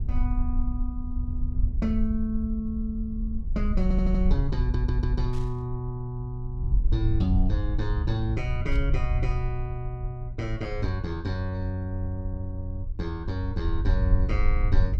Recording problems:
rumble; below 64 Hz, SNR -1 dB
stutter; at 4 s and at 4.5 s
static burst; at 5.5 s and at 8.5 s; peak -14 dB vs average level

